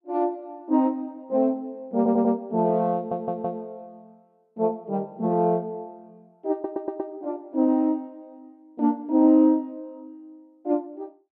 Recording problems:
audio stuttering; at 2 s, at 3 s and at 6.5 s

